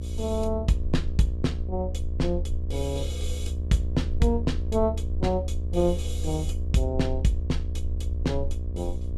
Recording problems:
hum; 60 Hz, harmonics up to 720 Hz, SNR 13 dB
rumble; below 76 Hz, strongest tone 74 Hz, SNR 2 dB

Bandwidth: 14.5 kHz